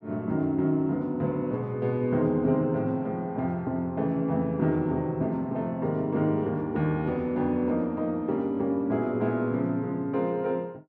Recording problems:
none

